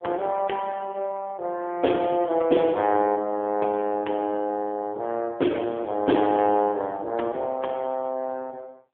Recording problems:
phone line; 220 Hz to 3.4 kHz, AMR-NB

